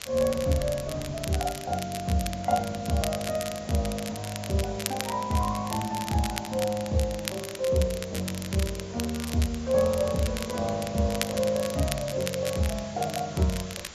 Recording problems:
lossy codec; AAC, log-spectral distance 10 dB
hiss; slope -1 dB per octave, SNR 16 dB
wind on the microphone; below 310 Hz, SNR 17 dB
crackling; vinyl, SNR 9 dB

